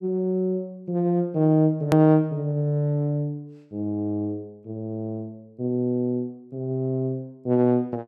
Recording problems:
click at an edit; at 2 s

